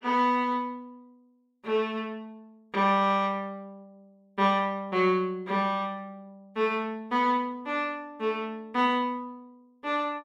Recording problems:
none

